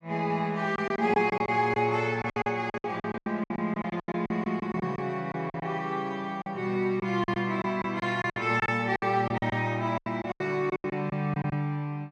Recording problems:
packet loss; 15% of the sound replaced, filled with silence

